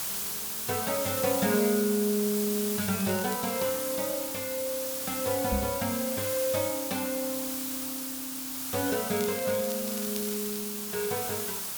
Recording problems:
background hiss; slope 0 dB per octave, SNR 1 dB
crackle; at 3 s and from 9 to 11 s; loose cable, SNR 13 dB
microphone bump; at 5.5 s; peak +3 dB vs average level

